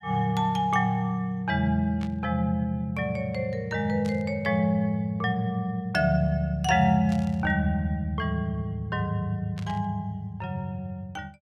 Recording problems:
burst of static; 4 times, first at 2 s; peak -12 dB vs average level

